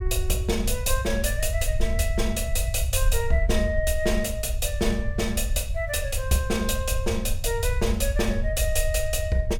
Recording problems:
low-frequency rumble; below 72 Hz, SNR 3 dB

